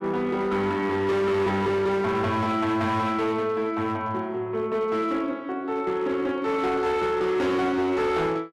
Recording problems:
distortion; hard clipping, signal-to-distortion ratio 11 dB

